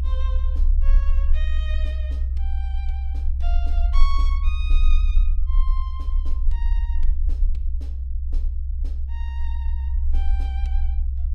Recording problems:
rumble; below 64 Hz, strongest tone 22 Hz, SNR -16 dB

